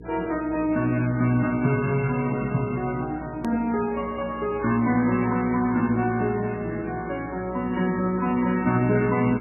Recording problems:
codec artefacts; MP3, then MP3, log-spectral distance 3 dB, nothing above 2.7 kHz
electrical hum; 60 Hz, harmonics up to 480 Hz, SNR 18 dB
click at an edit; at 3.5 s

